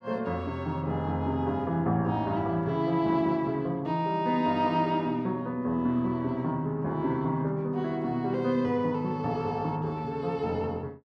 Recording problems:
none

